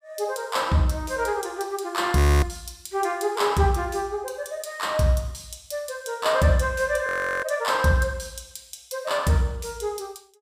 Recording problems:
audio freezing; at 2 s and at 7 s

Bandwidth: 15.5 kHz